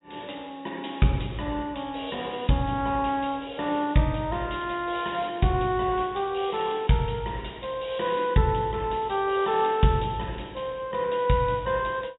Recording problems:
treble cut off; nothing above 4 kHz

